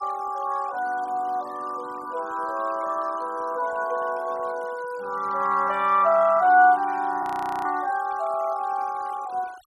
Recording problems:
denoising artefacts; signal-to-artefact ratio 23 dB
frozen audio; at 7 s

